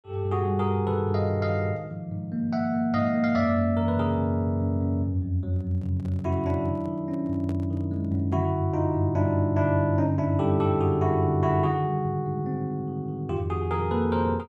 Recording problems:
handling noise; from 5.5 to 8.5 s; peak -12 dB vs average level

